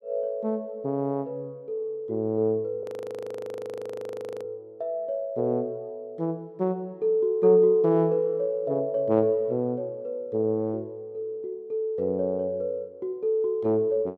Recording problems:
frozen audio; at 3 s for 1.5 s

